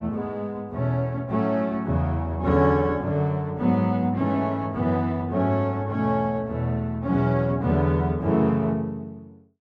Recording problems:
none

